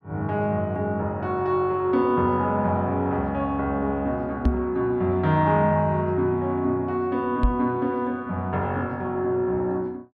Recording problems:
knock on the microphone; at 4.5 s and at 7.5 s; peak +8 dB vs average level

